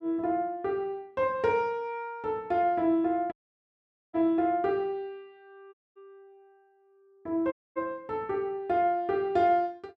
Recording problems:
audio cutting out; at 3.5 s for 1 s, at 5.5 s and at 7.5 s

